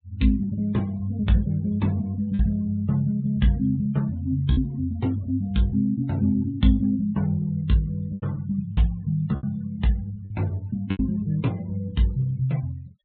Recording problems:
treble cut off; nothing above 4 kHz
denoising artefacts; signal-to-artefact ratio 26 dB
lost packets; 3% of the sound replaced, filled with repeated pitch periods

